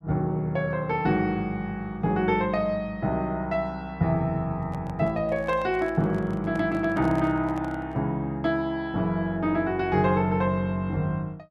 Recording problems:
handling noise; from 4.5 to 8 s; peak -10 dB vs average level

